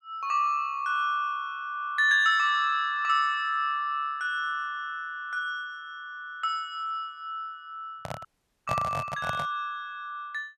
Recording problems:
microphone handling noise; from 8 to 9.5 s; peak 0 dB vs average level
audio cutting out; at 8.5 s

